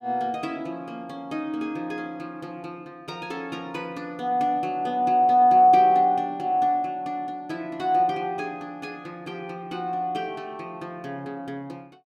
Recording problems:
none

